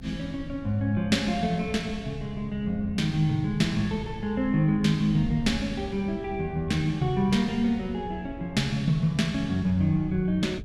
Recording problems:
electrical hum; 60 Hz, harmonics up to 720 Hz, SNR 23 dB
wind noise; below 130 Hz, SNR 15 dB

